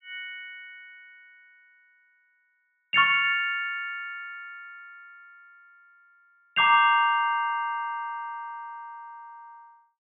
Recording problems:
treble cut off; nothing above 4 kHz

